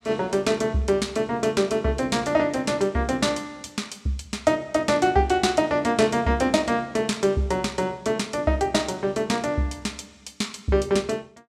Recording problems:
none

